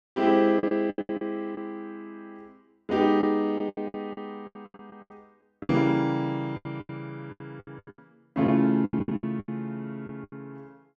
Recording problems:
lost packets; 18% of the sound replaced, filled with the last packet

